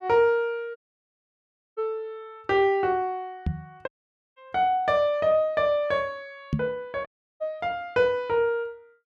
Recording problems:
audio cutting out; at 1 s for 1 s, at 4 s and at 7 s
microphone thump; at 3.5 s and at 6.5 s; peak +4 dB vs average level

